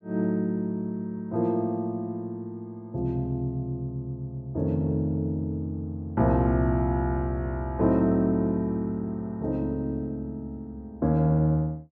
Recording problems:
none

